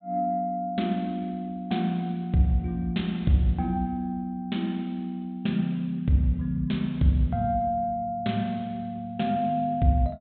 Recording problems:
low-pass filter; nothing above 4 kHz

